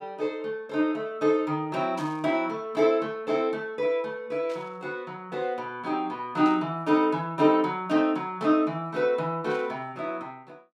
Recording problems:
static burst; 4 times, first at 2 s; peak -13 dB vs average level

